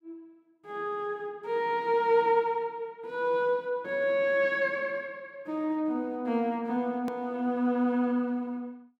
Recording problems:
click at an edit; at 7 s

